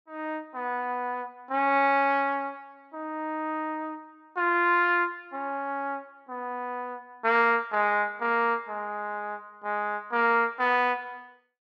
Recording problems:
none

